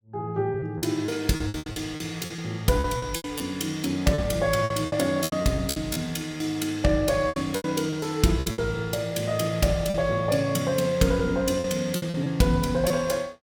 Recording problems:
packet loss; 11% of the sound replaced, filled with repeated pitch periods

